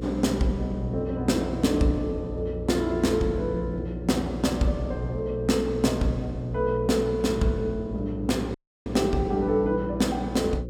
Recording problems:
hum; 60 Hz, harmonics up to 540 Hz, SNR 9 dB
dropout; at 8.5 s

